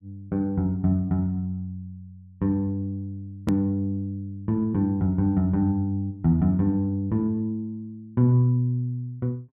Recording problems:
hard cut with a click; at 3.5 s

